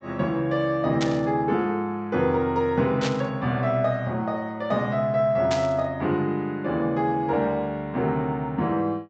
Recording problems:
treble cut off; nothing above 8 kHz
static burst; at 1 s, at 3 s and at 5.5 s; peak -2 dB vs average level

